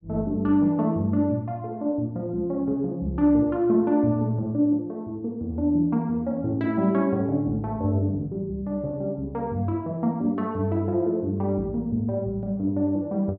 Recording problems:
none

